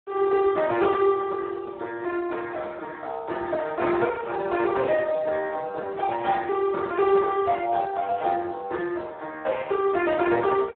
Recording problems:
telephone audio; 300 Hz to 2.6 kHz, Speex

